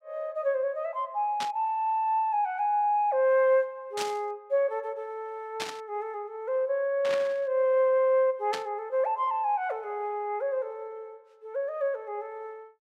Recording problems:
static burst; 5 times, first at 1.5 s; peak -2 dB vs average level

